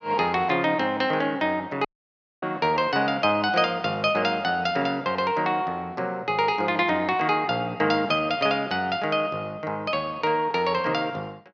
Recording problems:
dropout; at 2 s for 0.5 s

